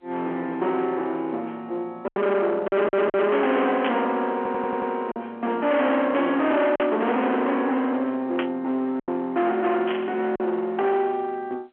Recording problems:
phone line; 620 Hz to 3.4 kHz, G.711
distorted audio; hard clipping, uneven, signal-to-distortion ratio 6 dB
lost packets; 3% of the sound replaced, filled with silence
stutter; at 2.5 s and at 4.5 s
static burst; 4 times, first at 4 s; peak -1 dB vs average level

